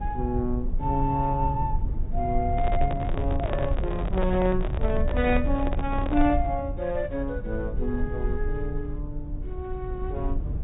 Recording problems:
treble cut off; nothing above 4 kHz
low-frequency rumble; below 70 Hz, SNR 3 dB
handling noise; from 2.5 to 6.5 s; peak +1 dB vs average level

